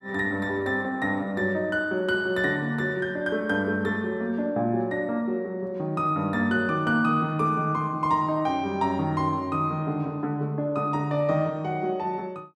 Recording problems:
none

